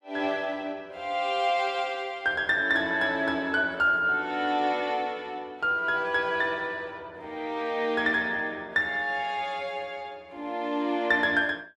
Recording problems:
none

